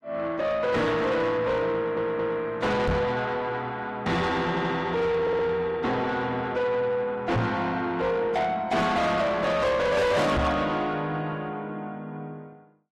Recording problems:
lossy compression; AAC, log-spectral distance 2 dB, nothing above 13.1 kHz
distortion; soft clipping, signal-to-distortion ratio 7 dB
stutter; at 2 s, at 4.5 s and at 5 s
knock on the microphone; at 3 s, at 7.5 s and at 10 s; peak +4 dB vs average level

